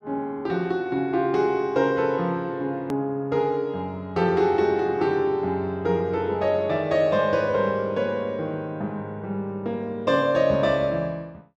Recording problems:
edit click; at 3 s

